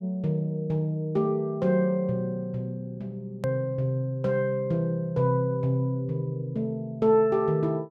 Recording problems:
hard cut with a click; at 3.5 s

